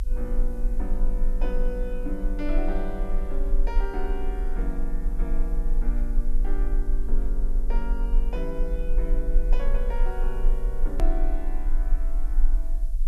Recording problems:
hiss; SNR 25 dB
low-frequency rumble; below 36 Hz, strongest tone 22 Hz, SNR -7 dB
click at an edit; at 11 s

